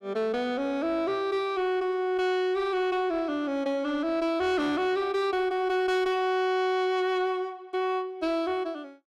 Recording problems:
distortion; soft clipping, signal-to-distortion ratio 11 dB

